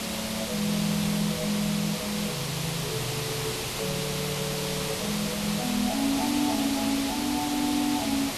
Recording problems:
hiss; SNR 1 dB

